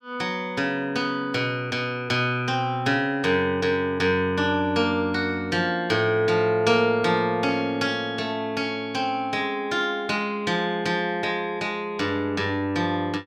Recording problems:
none

